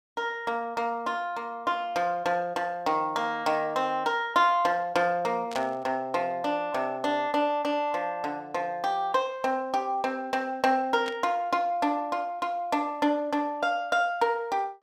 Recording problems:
static burst; at 5.5 s and at 11 s; peak -7 dB vs average level

